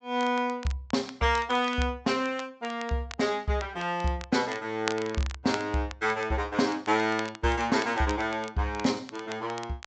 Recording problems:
low-pass filter; nothing above 8 kHz
crackling; vinyl, SNR 15 dB

